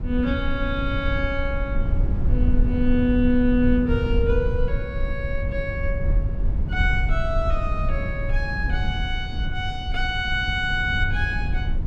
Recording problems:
low-frequency rumble; below 84 Hz, SNR 1 dB

